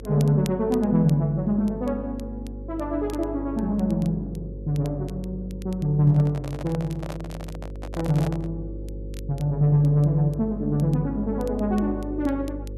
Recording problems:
hum; 50 Hz, harmonics up to 550 Hz, SNR 12 dB
crackling; vinyl, SNR 27 dB
microphone handling noise; from 6 to 8.5 s; peak -7 dB vs average level

